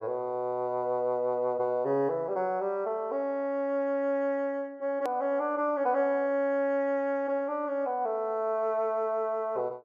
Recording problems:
hard cut with a click; at 5 s

